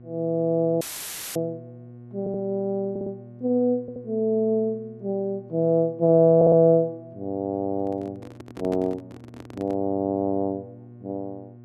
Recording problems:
electrical hum; 60 Hz, harmonics up to 720 Hz, SNR 21 dB
dropout; at 1 s for 0.5 s; filled with static
stutter; 4 times, first at 2 s
microphone handling noise; from 8 to 10 s; peak -7 dB vs average level

